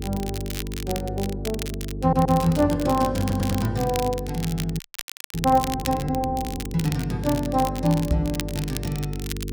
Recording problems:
hum; 50 Hz, harmonics up to 450 Hz, SNR 8 dB
crackle; vinyl, SNR 11 dB
audio stuttering; at 2 s and at 3 s
audio freezing; at 5 s for 0.5 s
microphone bump; at 8 s; peak +5 dB vs average level

